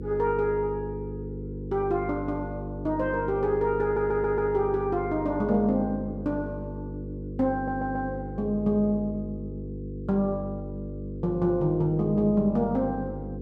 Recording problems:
mains hum; 50 Hz, harmonics up to 500 Hz, SNR 9 dB
audio stuttering; at 4 s and at 7.5 s

